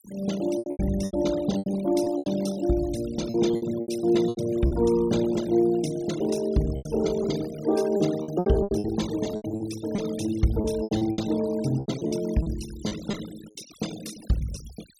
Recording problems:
denoising artefacts; signal-to-artefact ratio 16 dB
packet loss; 12% of the sound replaced, filled with repeated pitch periods

